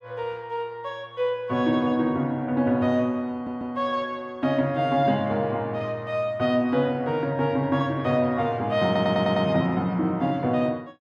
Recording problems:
audio stuttering; at 3.5 s and at 9 s

